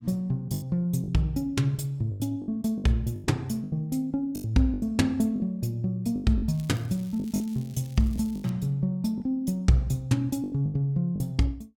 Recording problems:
packet loss; 10% of the sound replaced, filled with the last packet
crackle; from 6.5 to 8.5 s; loose cable, SNR 25 dB

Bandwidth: 17 kHz